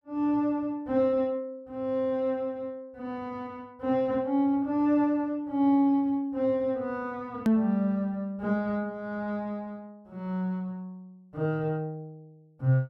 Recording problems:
edit click; at 7.5 s

